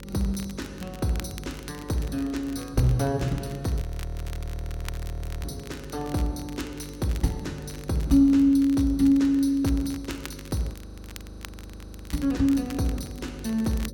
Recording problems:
electrical hum; 50 Hz, harmonics up to 550 Hz, SNR 17 dB
crackling; vinyl, SNR 20 dB
frozen audio; at 4 s for 1.5 s and at 11 s for 1.5 s

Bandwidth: 17 kHz